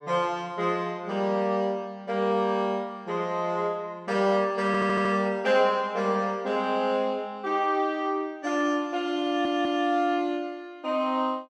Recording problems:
audio stuttering; at 4.5 s and at 9.5 s

